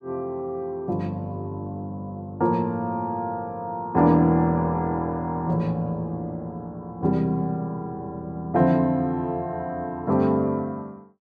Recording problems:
none

